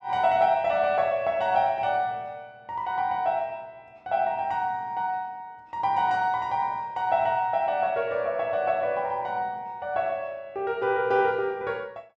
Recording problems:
none

